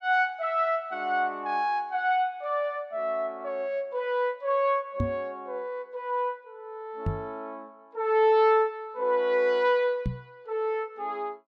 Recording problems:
microphone thump; at 5 s, at 7 s and at 10 s; peak +2 dB vs average level

